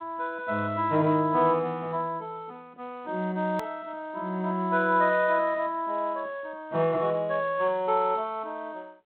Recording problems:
phone line; 220 Hz to 3.7 kHz, G.726
edit click; at 3.5 s

